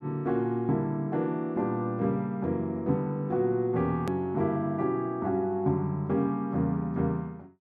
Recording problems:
click at an edit; at 4 s

